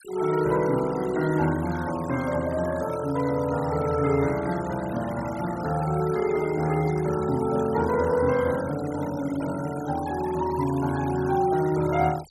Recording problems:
noise reduction artefacts; signal-to-artefact ratio 17 dB

